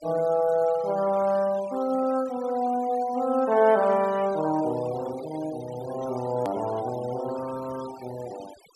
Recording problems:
noise reduction artefacts; signal-to-artefact ratio 19 dB
hard cut with a click; at 6.5 s

